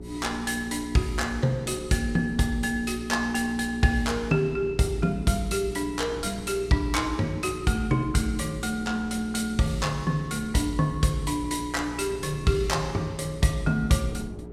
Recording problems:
hum; 60 Hz, harmonics up to 420 Hz, SNR 13 dB
wind noise; below 300 Hz, SNR 20 dB

